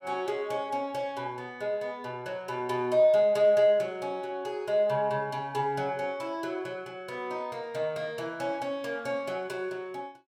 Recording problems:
none

